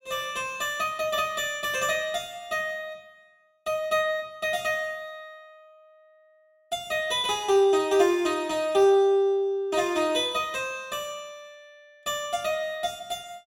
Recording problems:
none

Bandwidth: 16 kHz